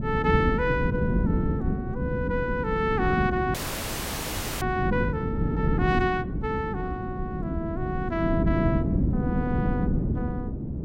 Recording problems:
wind on the microphone; below 250 Hz, SNR -1 dB
audio freezing; at 3.5 s for 1 s

